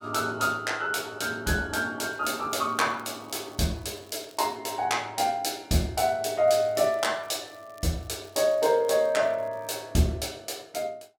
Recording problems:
crackle; from 2 to 4.5 s and from 6.5 to 10 s; loose cable, SNR 29 dB

